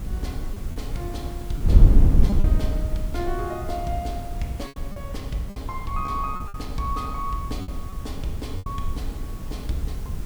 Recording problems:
background hiss; slope -4 dB per octave, SNR 13 dB
wind on the microphone; below 74 Hz, SNR -5 dB
lost packets; 6% of the sound replaced, filled with repeated pitch periods

